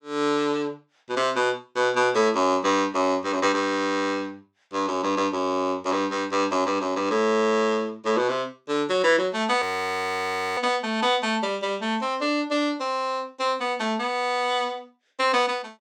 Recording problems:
frozen audio; at 9.5 s for 1 s

